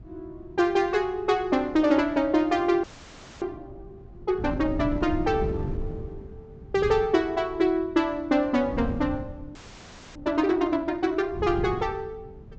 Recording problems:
treble cut off; nothing above 8 kHz
wind on the microphone; below 180 Hz, SNR 13 dB
audio freezing; at 3 s for 0.5 s and at 9.5 s for 0.5 s

